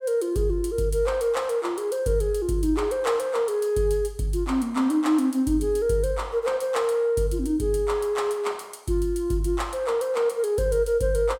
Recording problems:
none

